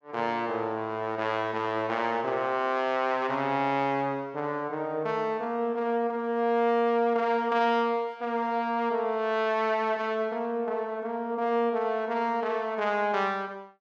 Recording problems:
none

